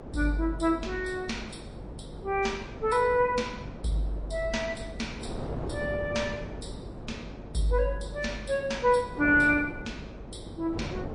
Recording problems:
codec artefacts; MP3, log-spectral distance 2 dB
hum; 50 Hz, harmonics up to 600 Hz, SNR 20 dB
wind on the microphone; below 490 Hz, SNR 12 dB

